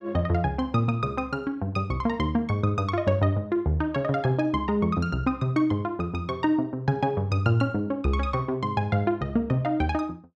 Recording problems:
none

